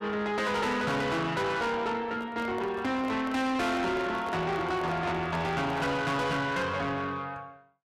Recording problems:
distorted audio; soft clipping, signal-to-distortion ratio 7 dB
microphone handling noise; from 2 to 6 s; peak -6 dB vs average level

